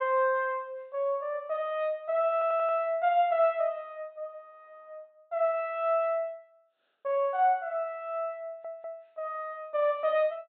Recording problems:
treble cut off; nothing above 4 kHz
stutter; at 2.5 s and at 8.5 s

